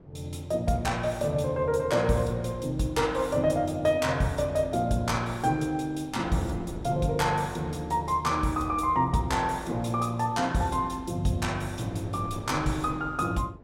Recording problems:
wind on the microphone; below 460 Hz, SNR 19 dB

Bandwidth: 16.5 kHz